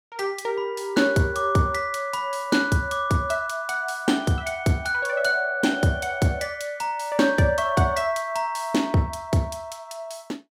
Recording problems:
none

